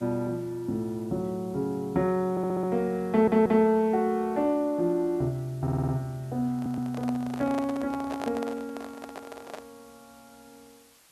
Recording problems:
hiss; slope 0 dB per octave, SNR 28 dB
stutter; 4 times, first at 2.5 s
handling noise; from 6.5 to 9.5 s; peak -4 dB vs average level

